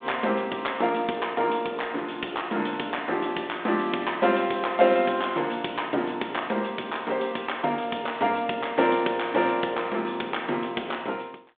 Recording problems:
telephone audio; 240 Hz to 3.6 kHz, G.726

